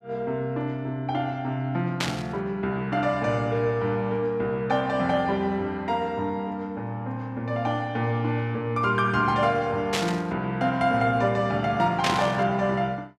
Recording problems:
static burst; at 2 s, at 10 s and at 12 s; peak +4 dB vs average level

